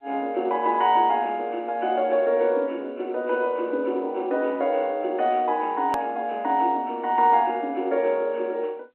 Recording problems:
phone line; 260 Hz to 3.8 kHz, G.711
hard cut with a click; at 6 s

